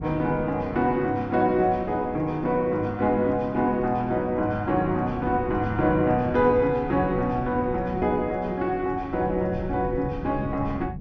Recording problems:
treble cut off; nothing above 8 kHz
wind on the microphone; below 180 Hz, SNR 13 dB

